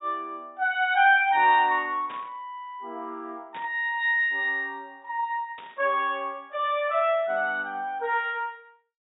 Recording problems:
treble cut off; nothing above 4 kHz
burst of static; at 2 s, at 3.5 s and at 5.5 s; peak -14 dB vs average level

